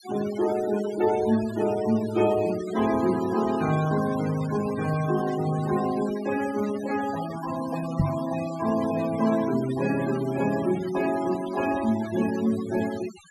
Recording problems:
noise reduction artefacts; signal-to-artefact ratio 13 dB
microphone bump; at 8 s; peak +6 dB vs average level

